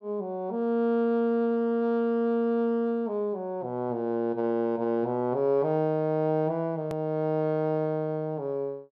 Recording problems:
click at an edit; at 7 s

